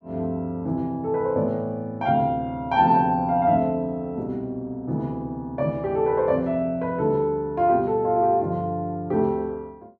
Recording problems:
none

